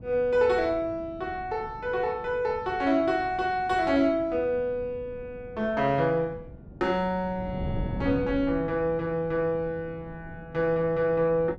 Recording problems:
wind on the microphone; below 230 Hz, SNR 15 dB

